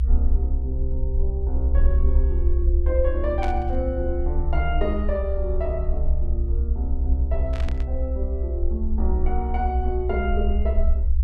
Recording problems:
low-frequency rumble; below 66 Hz, SNR -5 dB
static burst; at 3.5 s and at 7.5 s; peak -5 dB vs average level

